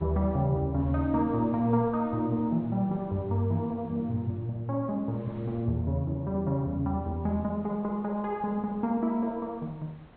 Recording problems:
treble cut off; nothing above 4.2 kHz
wind noise; below 750 Hz, SNR 25 dB

